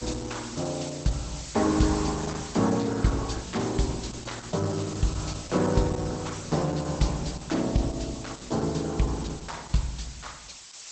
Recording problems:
lossy codec; Opus, log-spectral distance 17 dB, nothing above 8 kHz
hiss; slope +3 dB per octave, SNR 12 dB

